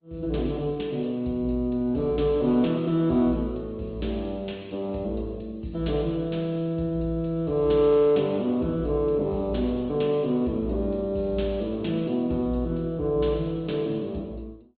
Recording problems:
treble missing; nothing above 4.1 kHz
codec artefacts; Opus, log-spectral distance 2 dB

